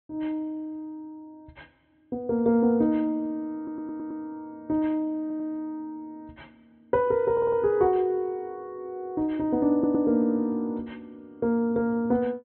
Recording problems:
low-pass filter; nothing above 4.1 kHz
audio stuttering; 4 times, first at 3.5 s

